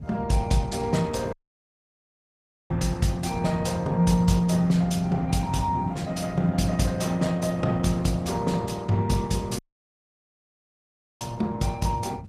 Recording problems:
lossy compression; Opus, log-spectral distance 3 dB, nothing above 14.3 kHz
low-frequency rumble; below 150 Hz, SNR 10 dB
wind noise; below 390 Hz, SNR 22 dB
audio cutting out; at 1.5 s for 1.5 s and at 9.5 s for 1.5 s

